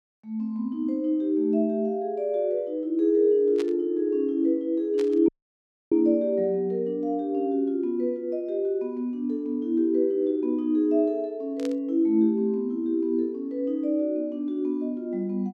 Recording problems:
burst of static; at 3.5 s, at 5 s and at 12 s; peak -11 dB vs average level
audio cutting out; at 5.5 s for 0.5 s

